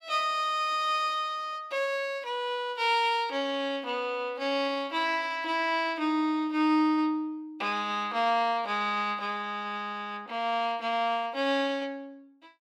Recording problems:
none

